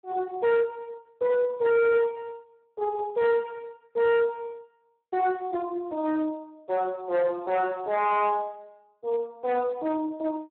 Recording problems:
phone line; 950 Hz to 2.8 kHz, Speex
distortion; hard clipping, signal-to-distortion ratio 7 dB

